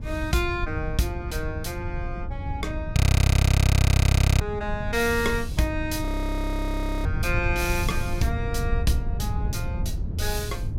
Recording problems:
low-frequency rumble; below 100 Hz, SNR 5 dB
audio freezing; at 3 s for 1.5 s and at 6 s for 1 s

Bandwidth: 16 kHz